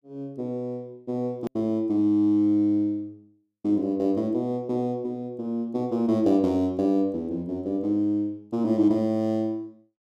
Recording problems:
edit click; at 1.5 s

